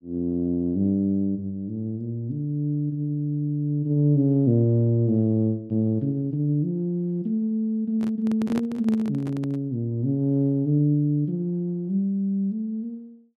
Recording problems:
microphone handling noise; from 8 to 9.5 s; peak -3 dB vs average level

